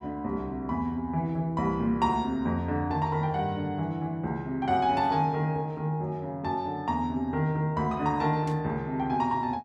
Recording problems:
static burst; at 8.5 s; peak -13 dB vs average level

